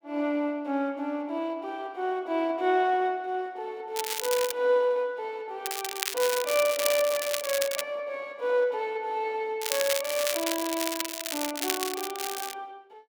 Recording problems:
crackle; at 4 s, from 5.5 to 8 s and from 9.5 to 13 s; loose cable, SNR 3 dB

